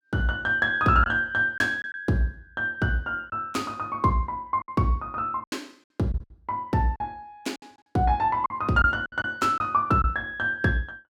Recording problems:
packet loss; 6% of the sound replaced, filled with silence

